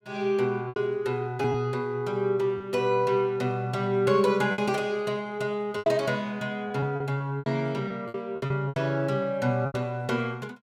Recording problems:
lost packets; 8% of the sound replaced, filled with repeated pitch periods

